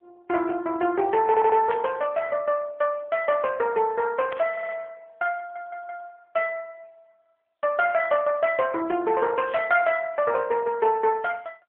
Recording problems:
phone line; 240 Hz to 3.4 kHz, AMR-NB
audio stuttering; at 1.5 s, at 4.5 s and at 5.5 s
static burst; at 1.5 s, at 4.5 s and at 9.5 s; peak -8 dB vs average level

